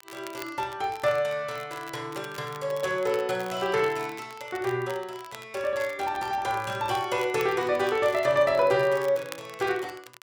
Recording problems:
crackle; vinyl, SNR 19 dB

